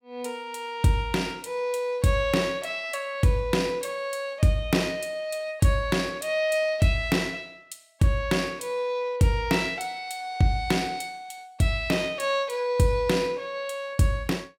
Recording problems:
none

